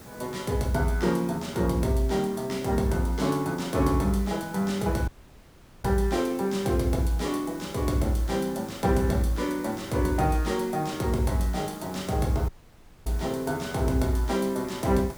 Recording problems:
background hiss; SNR 17 dB
audio cutting out; at 5 s for 1 s and at 12 s for 0.5 s

